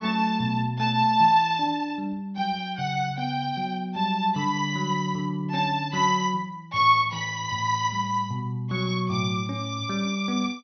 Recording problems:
treble cut off; nothing above 6.1 kHz

